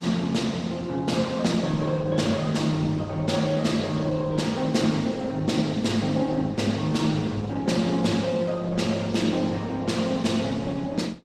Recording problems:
codec artefacts; Opus, log-spectral distance 4 dB, nothing above 15.5 kHz

